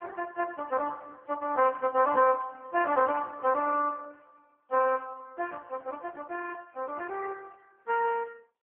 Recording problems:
telephone audio; 300 Hz to 3.1 kHz, AMR-NB

